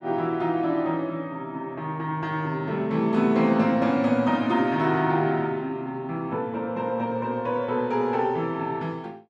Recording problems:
none

